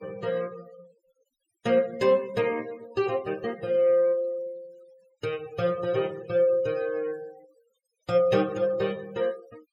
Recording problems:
noise reduction artefacts; signal-to-artefact ratio 23 dB

